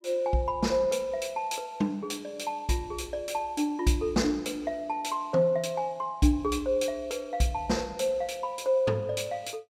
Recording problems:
none

